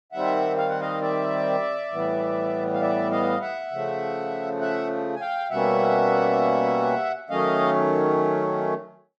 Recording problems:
none

